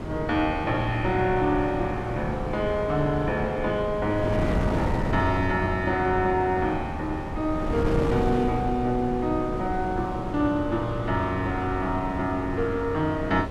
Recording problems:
wind noise; below 400 Hz, SNR 6 dB

